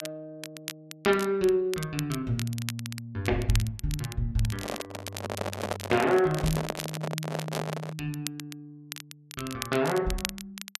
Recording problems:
crackle; vinyl, SNR 11 dB
handling noise; from 4.5 to 8 s; peak +3 dB vs average level

